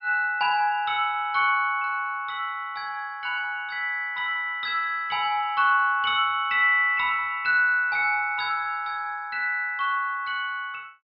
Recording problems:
treble cut off; nothing above 5.5 kHz

